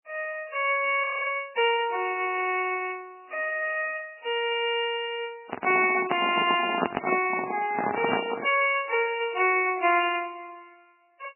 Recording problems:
codec artefacts; MP3, log-spectral distance 6 dB, nothing above 2.8 kHz
audio freezing; at 1 s
microphone handling noise; from 5.5 to 8.5 s; peak +5 dB vs average level

